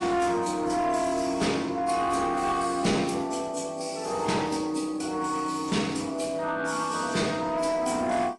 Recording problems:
lossy compression; AAC, log-spectral distance 4 dB, nothing above 10.7 kHz
distorted audio; soft clipping, signal-to-distortion ratio 11 dB

